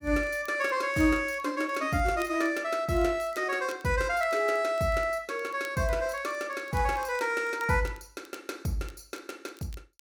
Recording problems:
crackling; vinyl, SNR 26 dB

